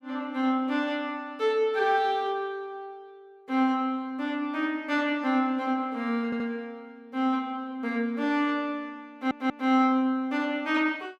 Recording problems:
audio stuttering; at 6.5 s and at 9 s

